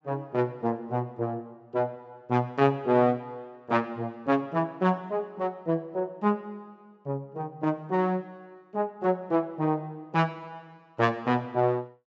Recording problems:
treble cut off; nothing above 8 kHz

